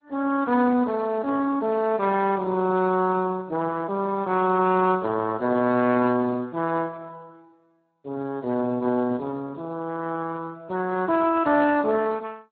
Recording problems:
lossy compression; MP2, then Speex, log-spectral distance 2 dB, nothing above 3.8 kHz

